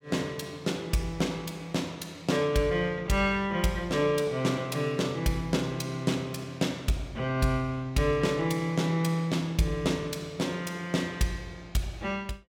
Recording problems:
none

